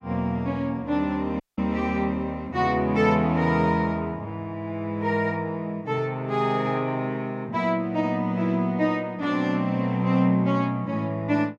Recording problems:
audio cutting out; at 1.5 s

